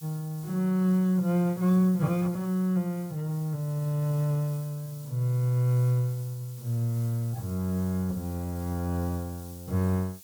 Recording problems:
hiss; SNR 20 dB

